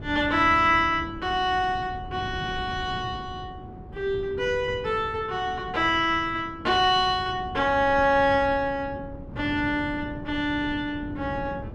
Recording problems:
wind on the microphone; below 260 Hz, SNR 14 dB

